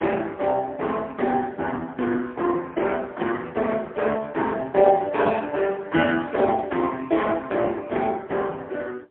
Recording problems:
telephone audio; 280 Hz to 3.3 kHz, AMR-NB, then MP3

